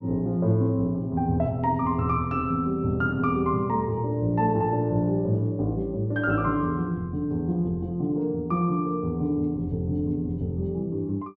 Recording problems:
none

